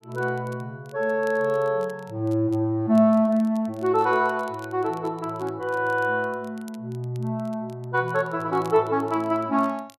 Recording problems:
crackling; vinyl, SNR 29 dB

